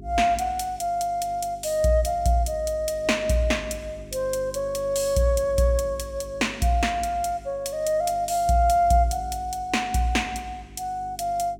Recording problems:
electrical hum; 50 Hz, harmonics up to 400 Hz, SNR 21 dB

